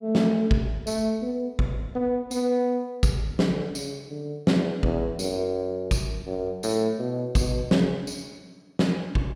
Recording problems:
none

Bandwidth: 17 kHz